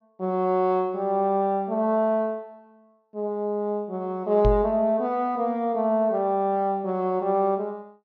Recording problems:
treble cut off; nothing above 6.4 kHz
microphone thump; at 4.5 s; peak +3 dB vs average level

